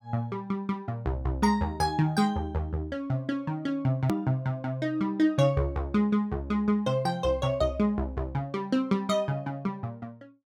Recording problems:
hard cut with a click; at 4 s

